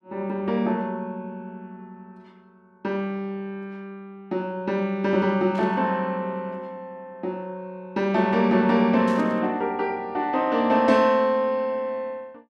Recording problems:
burst of static; at 5.5 s and at 9 s; peak -14 dB vs average level

